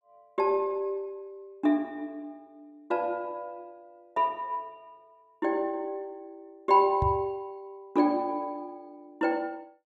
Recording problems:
knock on the microphone; at 7 s; peak +2 dB vs average level

